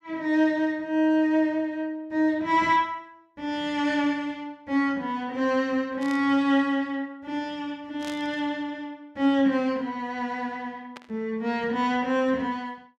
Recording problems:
burst of static; at 6 s, at 8 s and at 11 s; peak -10 dB vs average level

